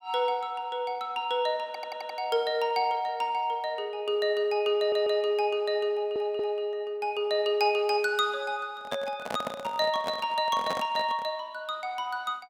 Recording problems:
audio stuttering; at 1.5 s, at 5 s and at 6 s
handling noise; from 9 to 11 s; peak 0 dB vs average level

